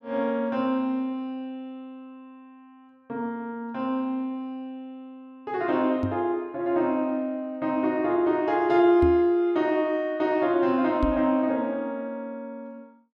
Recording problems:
microphone thump; at 6 s, at 9 s and at 11 s; peak +2 dB vs average level

